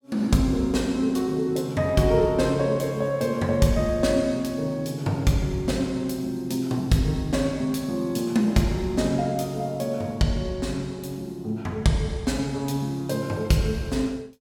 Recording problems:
none

